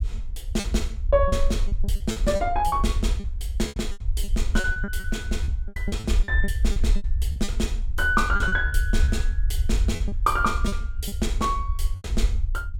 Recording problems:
low-frequency rumble; below 62 Hz, SNR 0 dB
packet loss; 15% of the sound replaced, filled with repeated pitch periods

